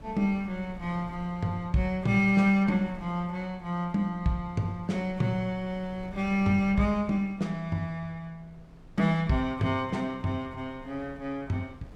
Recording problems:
wind noise; below 220 Hz, SNR 21 dB

